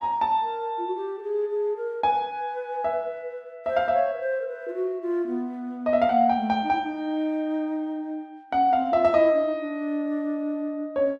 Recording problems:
none

